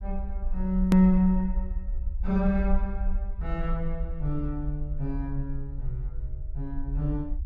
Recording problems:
rumble; below 52 Hz, SNR 6 dB
edit click; at 1 s

